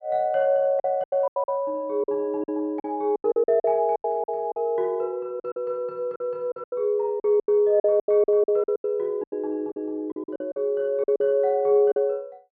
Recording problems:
lost packets; 15% of the sound replaced, filled with silence

